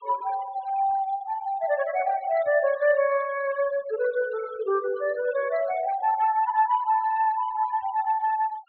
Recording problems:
treble missing; nothing above 4.2 kHz
denoising artefacts; signal-to-artefact ratio 20 dB

